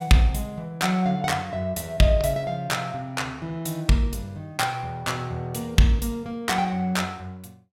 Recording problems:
none

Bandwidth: 16.5 kHz